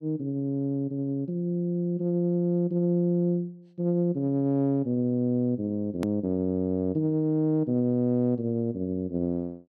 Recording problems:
hard cut with a click; at 6 s

